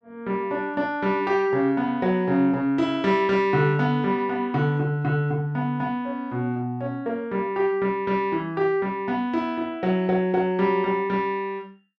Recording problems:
none

